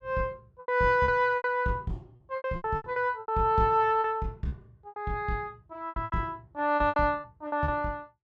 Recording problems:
packet loss; 16% of the sound replaced, filled with repeated pitch periods

